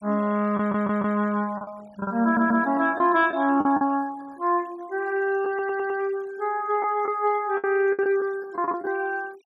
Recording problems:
denoising artefacts; signal-to-artefact ratio 26 dB
packet loss; 7% of the sound replaced, filled with the last packet
audio stuttering; at 0.5 s, at 2 s and at 5.5 s

